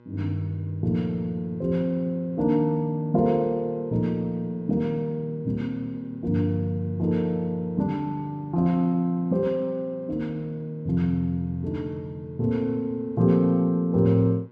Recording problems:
hum; 60 Hz, harmonics up to 2 kHz, SNR 25 dB

